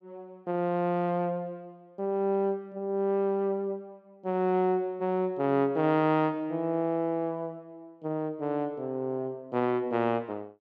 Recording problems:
none

